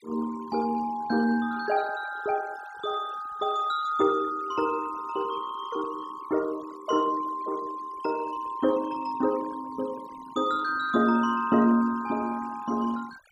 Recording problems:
noise reduction artefacts; signal-to-artefact ratio 20 dB

